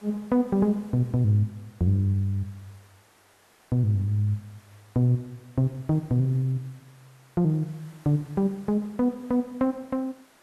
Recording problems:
background hiss; SNR 30 dB

